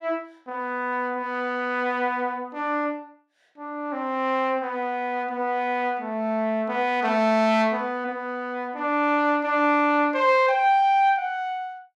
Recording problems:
none

